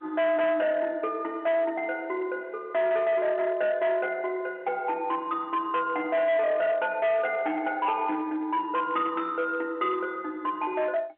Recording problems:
phone line; 220 Hz to 3.5 kHz, G.711
distortion; hard clipping, signal-to-distortion ratio 11 dB

